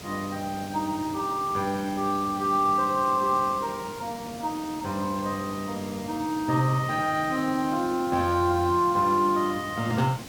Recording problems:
background hiss; SNR 14 dB

